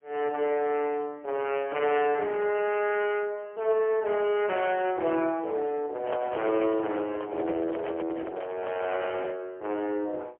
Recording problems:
telephone audio; 300 Hz to 3.1 kHz, AMR-NB, then MP3
handling noise; from 6 to 9.5 s; peak -2 dB vs average level

